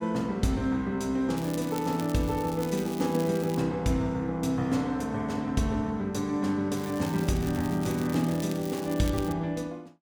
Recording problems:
crackle; from 1.5 to 3.5 s and from 7 to 9.5 s; loose cable, SNR 16 dB

